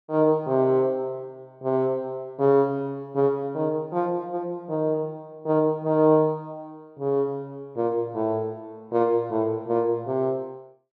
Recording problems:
none

